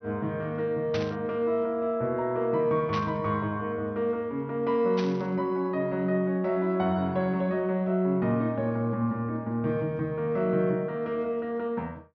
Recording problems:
treble missing; nothing above 6.1 kHz
static burst; at 1 s, at 3 s and at 5 s; peak -4 dB vs average level

